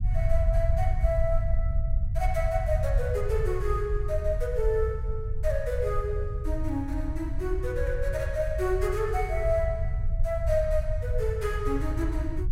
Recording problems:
rumble; below 76 Hz, SNR 0 dB

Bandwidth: 16 kHz